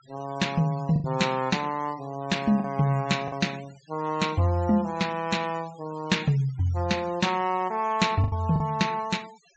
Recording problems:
low-pass filter; nothing above 8 kHz
denoising artefacts; signal-to-artefact ratio 20 dB
lost packets; 3% of the sound replaced, filled with the last packet

